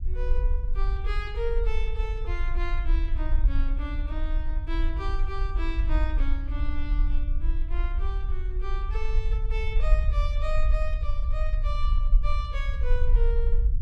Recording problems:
low-frequency rumble; below 48 Hz, SNR -9 dB

